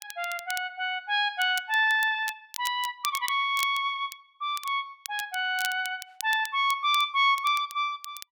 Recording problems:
crackling; vinyl, SNR 14 dB

